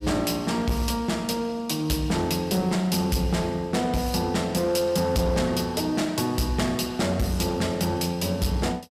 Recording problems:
distortion; hard clipping, uneven, signal-to-distortion ratio 11 dB

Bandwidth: 15.5 kHz